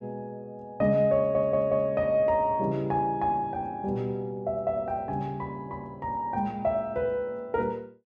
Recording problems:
audio stuttering; at 1 s

